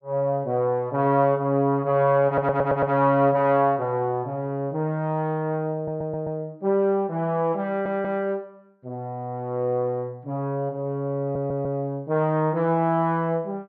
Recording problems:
audio stuttering; 4 times, first at 2.5 s

